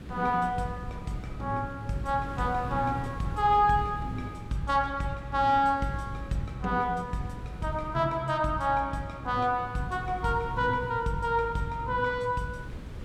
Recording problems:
wind noise; below 240 Hz, SNR 15 dB

